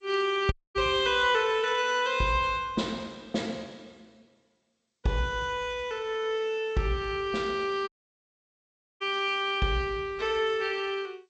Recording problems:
lossy codec; G.722, then G.722, log-spectral distance 2 dB, nothing above 7.3 kHz
dropout; at 0.5 s and at 8 s for 1 s

